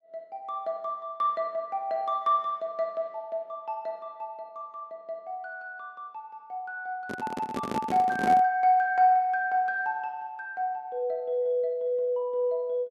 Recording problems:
microphone handling noise; from 7 to 8.5 s; peak +1 dB vs average level

